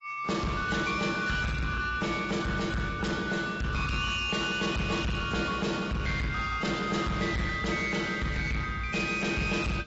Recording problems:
lossy codec; AAC, log-spectral distance 4 dB, nothing above 7.6 kHz
distortion; soft clipping, signal-to-distortion ratio 8 dB

